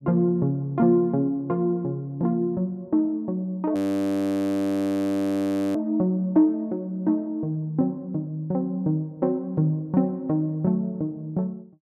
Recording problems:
audio freezing; at 4 s for 2 s

